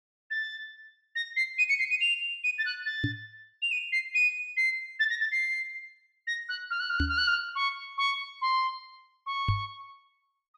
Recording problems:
knock on the microphone; at 3 s, at 7 s and at 9.5 s; peak +4 dB vs average level

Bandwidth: 13.5 kHz